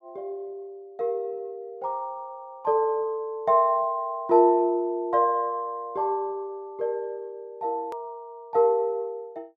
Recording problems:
hard cut with a click; at 8 s

